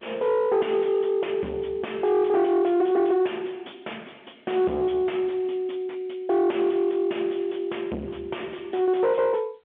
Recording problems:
telephone audio; 190 Hz to 3.4 kHz, G.711
distorted audio; soft clipping, signal-to-distortion ratio 6 dB

